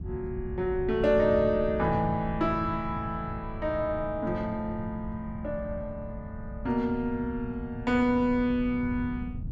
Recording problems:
wind noise; below 150 Hz, SNR 11 dB

